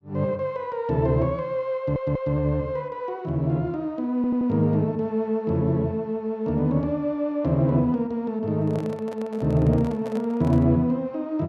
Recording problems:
stutter; at 2 s and at 4 s
microphone handling noise; from 8.5 to 11 s; peak -10 dB vs average level

